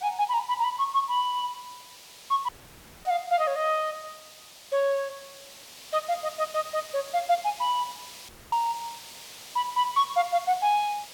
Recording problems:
hiss; SNR 16 dB
audio cutting out; at 2.5 s for 0.5 s and at 8.5 s

